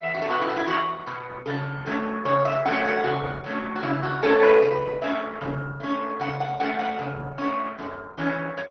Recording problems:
lossy compression; MP2, then Opus, log-spectral distance 4 dB

